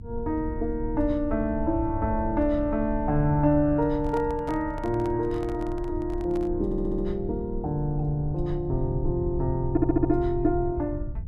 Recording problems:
rumble; below 86 Hz, SNR 9 dB
microphone handling noise; from 4 to 6.5 s; peak -10 dB vs average level
stutter; at 6.5 s and at 9.5 s

